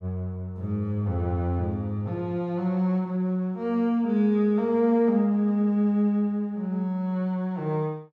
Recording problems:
none

